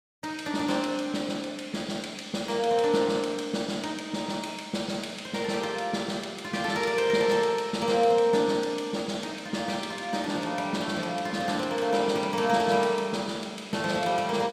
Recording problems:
none

